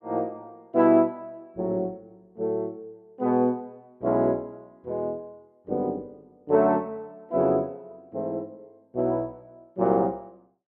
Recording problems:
none

